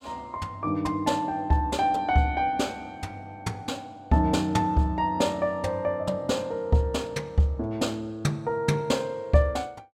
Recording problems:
none

